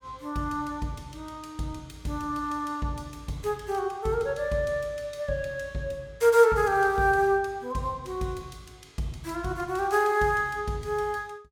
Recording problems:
none

